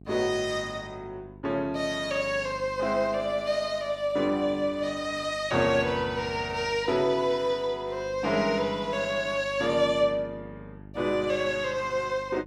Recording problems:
hum; 50 Hz, harmonics up to 750 Hz, SNR 20 dB

